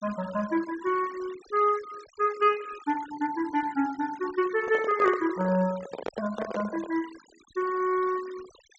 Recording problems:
low-pass filter; nothing above 8 kHz
denoising artefacts; signal-to-artefact ratio 19 dB
handling noise; from 4.5 to 7 s; peak -3 dB vs average level

